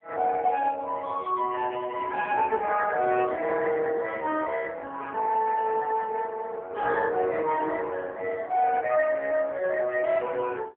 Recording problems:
telephone audio; 300 Hz to 2.5 kHz, AMR-NB

